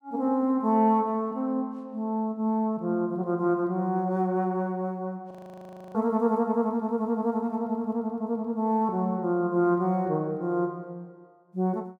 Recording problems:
frozen audio; at 5.5 s for 0.5 s

